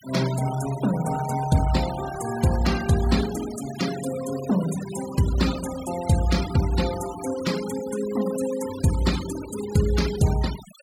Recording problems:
noise reduction artefacts; signal-to-artefact ratio 12 dB

